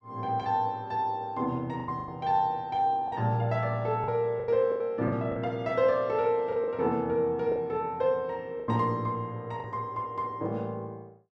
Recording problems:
packet loss; 6% of the sound replaced, filled with the last packet

